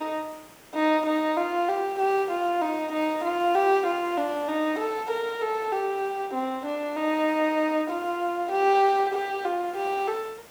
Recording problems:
background hiss; slope -4 dB per octave, SNR 23 dB

